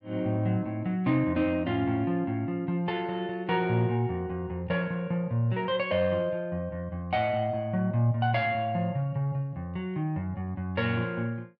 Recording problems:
none

